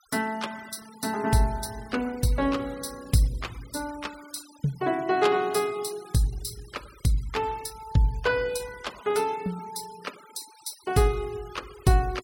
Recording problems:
noise reduction artefacts; signal-to-artefact ratio 20 dB

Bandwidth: 17 kHz